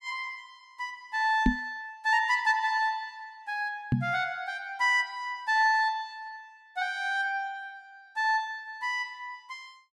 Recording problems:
microphone thump; at 1.5 s and at 4 s; peak +8 dB vs average level

